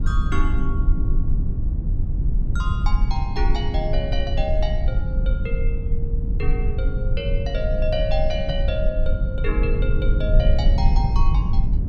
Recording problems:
rumble; below 66 Hz, SNR -6 dB

